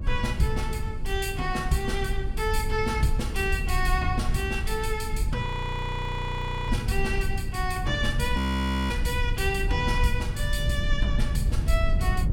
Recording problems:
hum; 60 Hz, harmonics up to 360 Hz, SNR 18 dB
rumble; below 80 Hz, SNR 1 dB
audio freezing; at 5.5 s for 1 s and at 8.5 s for 0.5 s

